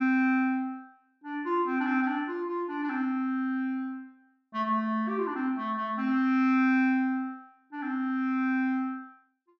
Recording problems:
none

